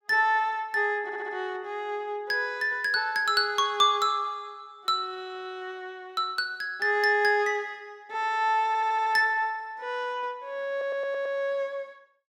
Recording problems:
stutter; at 1 s, at 8.5 s and at 11 s

